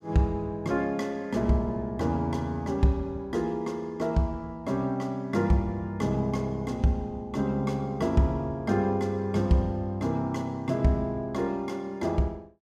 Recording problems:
none

